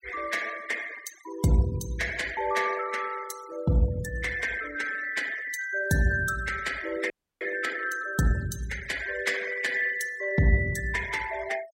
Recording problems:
denoising artefacts; signal-to-artefact ratio 16 dB
audio freezing; at 7 s

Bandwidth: 16 kHz